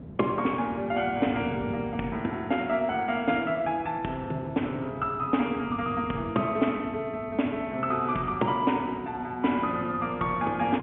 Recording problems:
phone line; 170 Hz to 3.6 kHz, G.711
wind noise; below 310 Hz, SNR 15 dB

